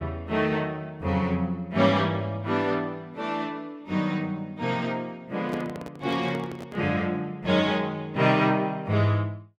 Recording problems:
handling noise; from 5.5 to 7 s; peak -5 dB vs average level

